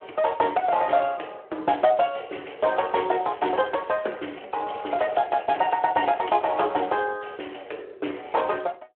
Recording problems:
telephone audio; 300 Hz to 3.3 kHz, Speex
crackle; from 2.5 to 4.5 s and from 5 to 7 s; loose cable, SNR 27 dB

